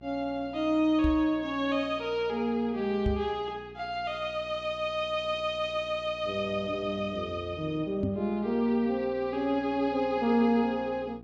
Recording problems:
electrical hum; 60 Hz, harmonics up to 1.2 kHz, SNR 22 dB
microphone bump; at 1 s, at 3 s and at 8 s; peak +2 dB vs average level

